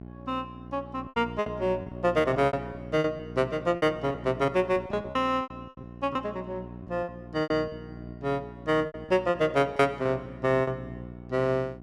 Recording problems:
hum; 60 Hz, harmonics up to 780 Hz, SNR 14 dB
lost packets; 11% of the sound replaced, filled with repeated pitch periods

